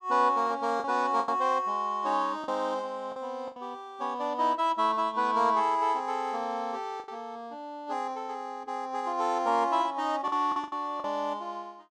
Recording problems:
packet loss; 5% of the sound replaced, filled with the last packet

